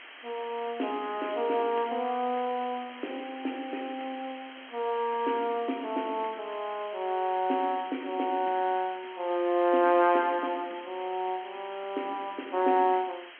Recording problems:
telephone audio; 240 Hz to 3.3 kHz, G.711
background hiss; SNR 16 dB

